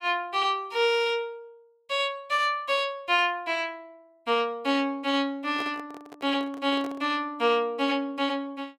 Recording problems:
microphone handling noise; from 5.5 to 7 s; peak -8 dB vs average level

